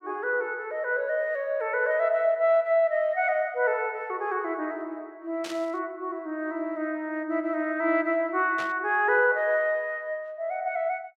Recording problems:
static burst; at 5.5 s and at 8.5 s; peak -7 dB vs average level

